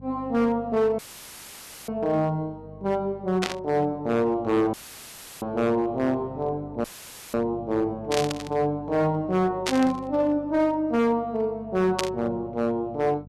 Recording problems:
distortion; hard clipping, signal-to-distortion ratio 11 dB
hum; 50 Hz, harmonics up to 500 Hz, SNR 21 dB
dropout; at 1 s for 1 s, at 4.5 s for 0.5 s and at 7 s for 0.5 s; filled with static
burst of static; 4 times, first at 3.5 s; peak +3 dB vs average level

